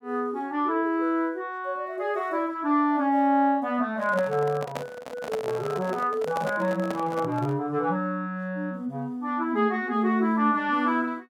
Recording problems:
microphone handling noise; from 4 to 7.5 s; peak -2 dB vs average level

